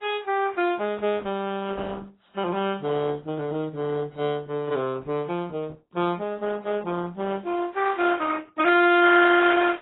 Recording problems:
lossy compression; Opus, then AAC, log-spectral distance 4 dB, nothing above 3.2 kHz

